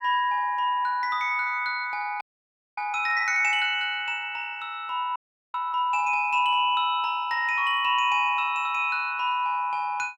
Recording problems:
frozen audio; at 2 s for 0.5 s and at 5 s

